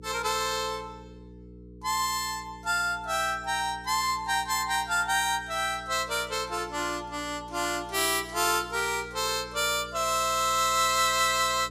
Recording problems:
hum; 60 Hz, harmonics up to 480 Hz, SNR 20 dB

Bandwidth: 14.5 kHz